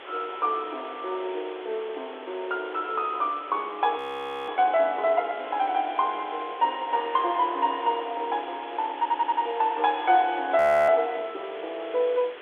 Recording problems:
phone line; 320 Hz to 3.8 kHz, G.726
background hiss; SNR 18 dB
wind on the microphone; below 960 Hz, SNR 21 dB
frozen audio; at 4 s for 0.5 s and at 11 s
stutter; at 9 s

